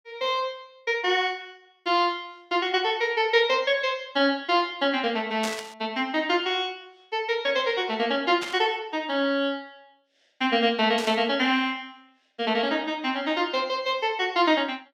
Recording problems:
static burst; at 5.5 s, at 8.5 s and at 11 s; peak -3 dB vs average level

